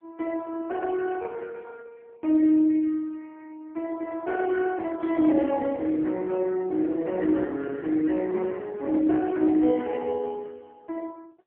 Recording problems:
telephone audio; 220 Hz to 3.4 kHz, AMR-NB

